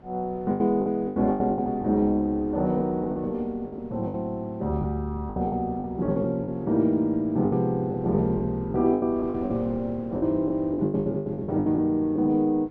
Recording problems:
wind on the microphone; below 460 Hz, SNR 22 dB
lost packets; 14% of the sound replaced, filled with the last packet

